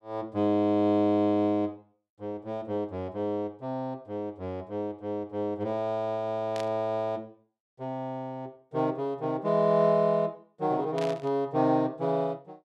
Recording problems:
static burst; at 6.5 s and at 11 s; peak -8 dB vs average level

